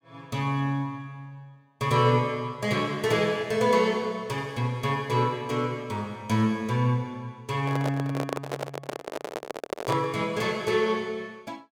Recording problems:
microphone handling noise; from 7.5 to 10 s; peak 0 dB vs average level

